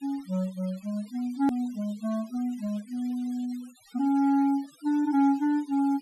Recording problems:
denoising artefacts; signal-to-artefact ratio 25 dB
hard cut with a click; at 1.5 s

